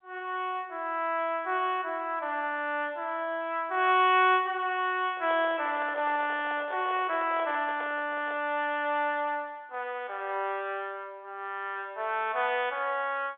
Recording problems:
telephone audio; 300 Hz to 3.6 kHz, G.711
microphone handling noise; from 5 to 8.5 s; peak -8 dB vs average level

